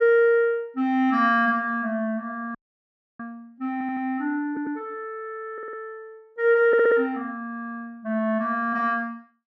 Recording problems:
dropout; at 2.5 s for 0.5 s
audio stuttering; 4 times, first at 3.5 s

